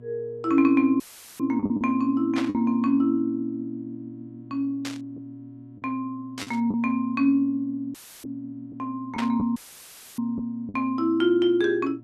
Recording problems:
hum; 60 Hz, harmonics up to 720 Hz, SNR 23 dB
packet loss; 3% of the sound replaced, filled with the last packet
audio cutting out; at 1 s, at 8 s and at 9.5 s for 0.5 s; filled with static
burst of static; 4 times, first at 2.5 s; peak -3 dB vs average level

